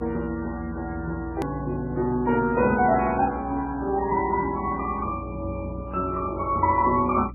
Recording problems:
lossy compression; MP3, log-spectral distance 2 dB, nothing above 13.1 kHz
hum; 60 Hz, harmonics up to 300 Hz, SNR 14 dB
edit click; at 1.5 s

